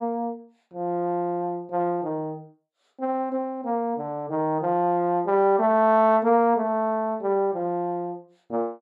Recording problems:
none

